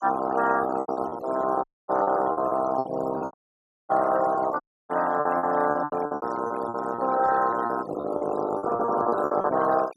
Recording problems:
denoising artefacts; signal-to-artefact ratio 16 dB
lost packets; 16% of the sound replaced, filled with repeated pitch periods
dropout; at 1.5 s, at 3.5 s for 0.5 s and at 4.5 s

